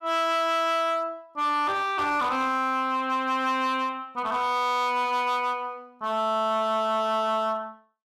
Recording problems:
distortion; hard clipping, uneven, signal-to-distortion ratio 11 dB

